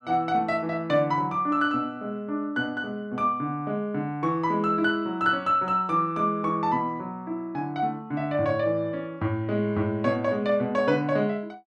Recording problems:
none

